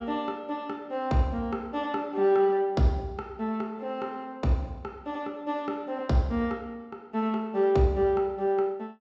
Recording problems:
treble missing; nothing above 8 kHz

